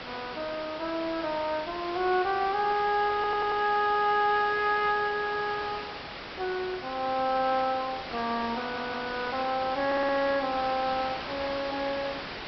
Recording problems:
treble cut off; nothing above 5.4 kHz
hiss; SNR 9 dB
stutter; at 3 s, at 8.5 s and at 10 s

